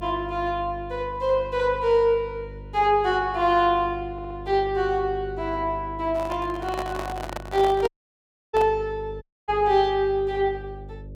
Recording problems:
hum; 50 Hz, harmonics up to 600 Hz, SNR 16 dB
stutter; at 4 s
microphone handling noise; from 6 to 8.5 s; peak -4 dB vs average level
audio cutting out; at 8 s for 0.5 s and at 9 s

